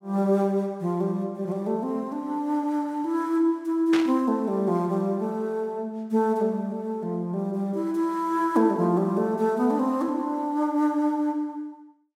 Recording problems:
static burst; at 4 s; peak -1 dB vs average level

